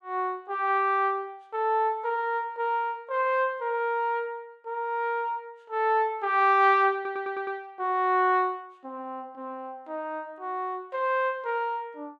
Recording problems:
audio stuttering; at 7 s

